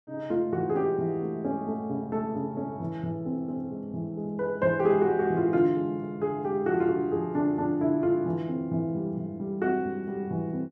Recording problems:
none

